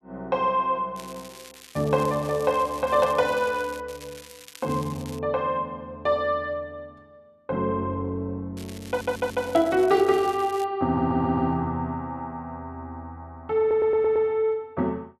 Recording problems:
crackle; from 1 to 4 s, from 4 to 5 s and from 8.5 to 11 s; loose cable, SNR 19 dB
audio stuttering; at 9 s, at 11 s and at 14 s

